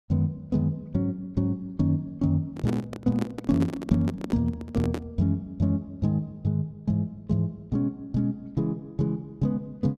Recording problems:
microphone handling noise; from 2.5 to 5 s; peak 0 dB vs average level

